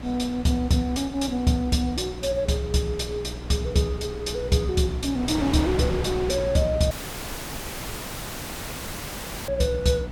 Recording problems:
electrical hum; 60 Hz, harmonics up to 300 Hz, SNR 13 dB
wind on the microphone; below 890 Hz, SNR 11 dB
audio cutting out; at 7 s for 2.5 s

